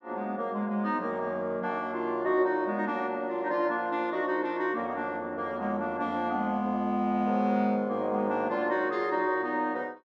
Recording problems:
none

